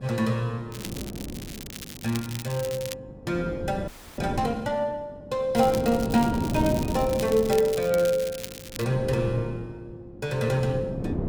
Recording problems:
electrical hum; 50 Hz, harmonics up to 1.1 kHz, SNR 23 dB
wind noise; below 350 Hz, SNR 7 dB
crackling; from 0.5 to 3 s and from 5.5 to 9 s; loose cable, SNR 12 dB
audio freezing; at 4 s

